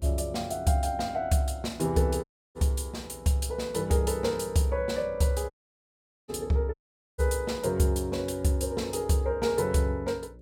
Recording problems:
electrical hum; 60 Hz, harmonics up to 600 Hz, SNR 23 dB
dropout; at 2 s, at 5.5 s for 1 s and at 6.5 s

